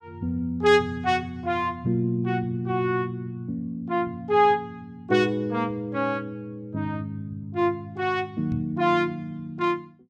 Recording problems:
microphone bump; at 8.5 s; peak -3 dB vs average level

